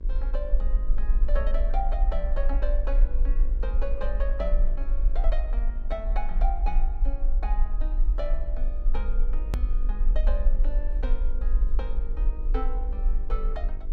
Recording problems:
hum; 50 Hz, harmonics up to 1.6 kHz, SNR 12 dB
rumble; below 40 Hz, strongest tone 24 Hz, SNR -10 dB
hard cut with a click; at 9.5 s

